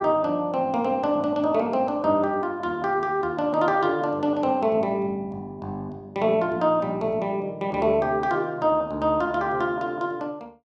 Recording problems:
none

